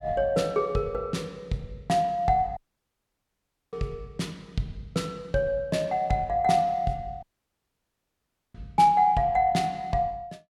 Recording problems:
dropout; at 2.5 s for 1 s and at 7 s for 1.5 s

